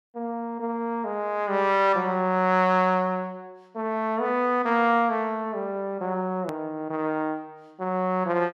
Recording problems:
click at an edit; at 6.5 s

